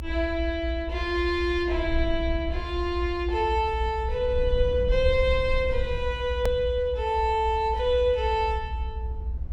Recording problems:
rumble; below 72 Hz, SNR 6 dB
click at an edit; at 6.5 s

